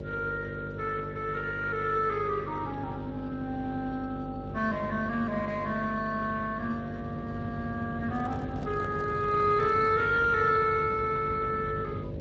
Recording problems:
lossy compression; Speex, log-spectral distance 3 dB
hum; 50 Hz, harmonics up to 600 Hz, SNR 10 dB
low-frequency rumble; below 240 Hz, SNR 13 dB
handling noise; from 8 to 10 s; peak -9 dB vs average level

